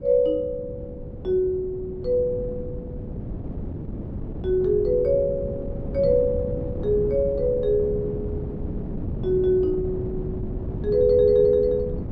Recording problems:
wind on the microphone; below 250 Hz, SNR 9 dB

